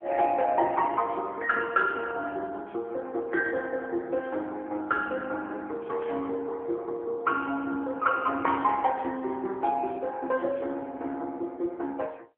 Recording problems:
telephone audio; 260 Hz to 3.3 kHz, AMR-NB
static burst; at 6 s and at 8.5 s; peak -13 dB vs average level

